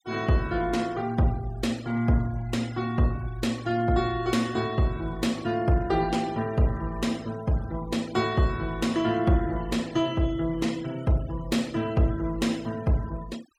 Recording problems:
denoising artefacts; signal-to-artefact ratio 21 dB

